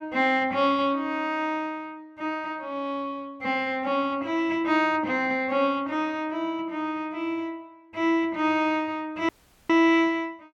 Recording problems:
dropout; at 9.5 s

